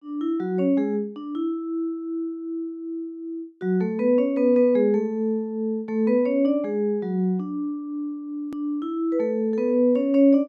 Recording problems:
edit click; at 8.5 s

